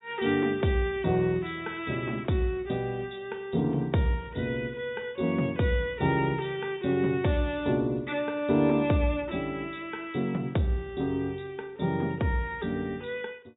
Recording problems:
low-pass filter; nothing above 4 kHz

